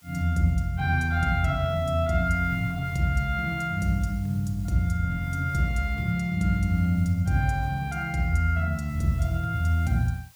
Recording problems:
hiss; slope +1 dB per octave, SNR 28 dB

